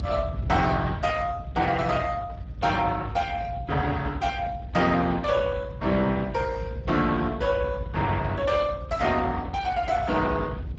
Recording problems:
lossy compression; Speex, log-spectral distance 3 dB, nothing above 7.3 kHz
low-frequency rumble; below 130 Hz, SNR 10 dB

